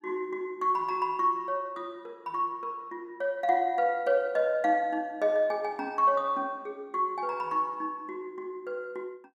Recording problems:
none

